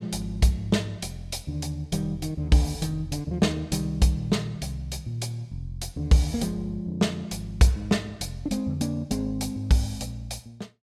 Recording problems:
none

